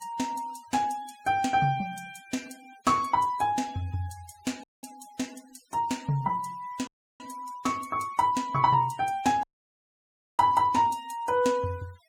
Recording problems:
noise reduction artefacts; signal-to-artefact ratio 23 dB
dropout; at 4.5 s, at 7 s and at 9.5 s for 1 s

